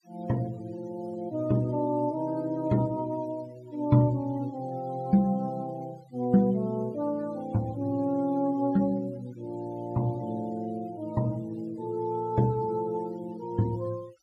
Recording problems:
denoising artefacts; signal-to-artefact ratio 26 dB

